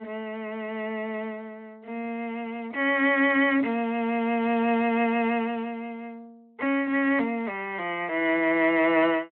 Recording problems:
phone line; 240 Hz to 3.6 kHz, Speex

